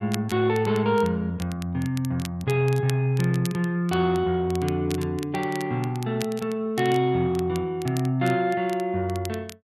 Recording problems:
crackle; vinyl, SNR 18 dB

